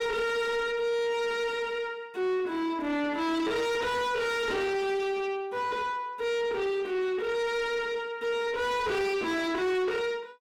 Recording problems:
distorted audio; soft clipping, signal-to-distortion ratio 6 dB

